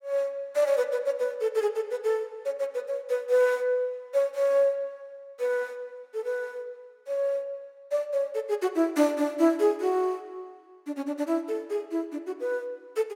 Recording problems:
none

